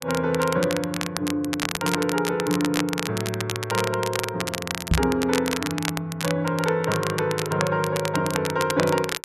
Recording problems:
crackling; vinyl, SNR 5 dB
knock on the microphone; at 5 s; peak +7 dB vs average level

